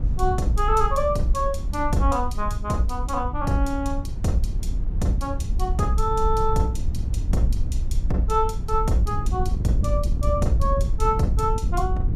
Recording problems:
low-frequency rumble; below 58 Hz, SNR 7 dB
wind noise; below 80 Hz, SNR 3 dB

